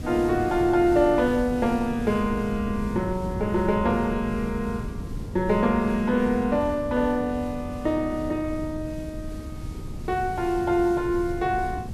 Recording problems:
background hiss; slope +2 dB per octave, SNR 25 dB
wind on the microphone; below 180 Hz, SNR 11 dB

